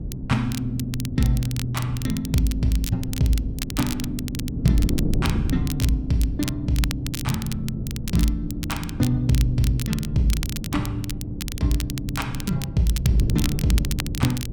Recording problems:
wind noise; below 190 Hz, SNR 5 dB
crackling; vinyl, SNR 10 dB

